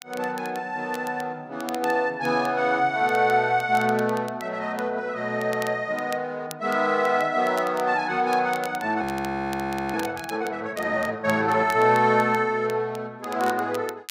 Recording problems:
crackling; vinyl, SNR 20 dB
audio freezing; at 9 s for 1 s

